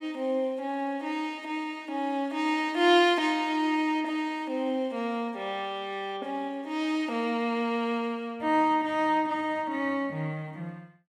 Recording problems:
none

